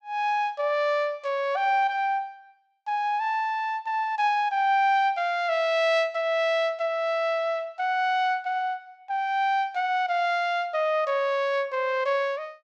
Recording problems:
none

